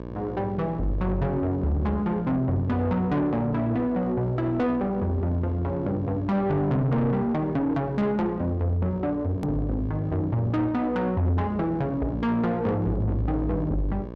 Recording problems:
distorted audio; soft clipping, signal-to-distortion ratio 11 dB
hum; 60 Hz, harmonics up to 1.3 kHz, SNR 12 dB
click at an edit; at 9.5 s

